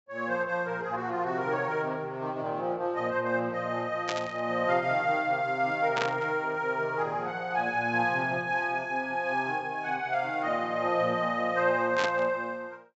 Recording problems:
treble missing; nothing above 7.6 kHz
burst of static; at 4 s, at 6 s and at 12 s; peak +2 dB vs average level

